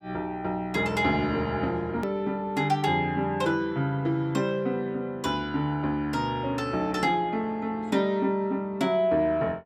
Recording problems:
hard cut with a click; at 2 s

